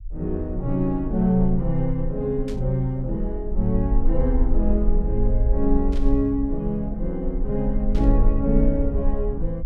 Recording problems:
rumble; below 46 Hz, SNR 3 dB
burst of static; at 2.5 s, at 6 s and at 8 s; peak -13 dB vs average level

